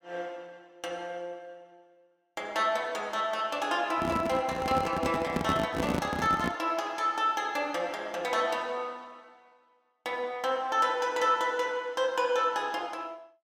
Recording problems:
handling noise; from 4 to 6.5 s; peak +3 dB vs average level

